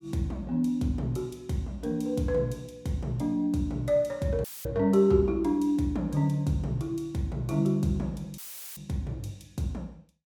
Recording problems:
audio cutting out; at 4.5 s and at 8.5 s; filled with static

